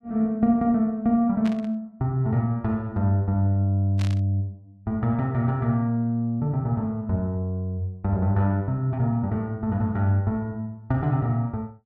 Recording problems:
static burst; at 1.5 s and at 4 s; peak -9 dB vs average level

